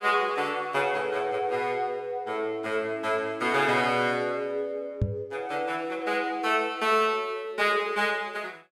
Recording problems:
microphone bump; at 5 s; peak +5 dB vs average level

